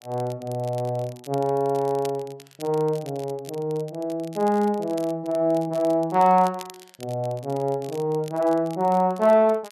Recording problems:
crackling; vinyl, SNR 23 dB

